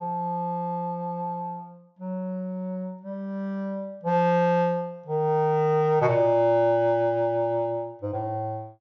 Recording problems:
low-pass filter; nothing above 8 kHz

